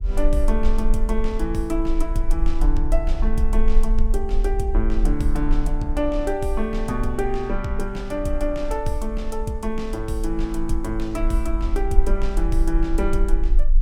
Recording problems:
rumble; below 38 Hz, strongest tone 18 Hz, SNR 0 dB

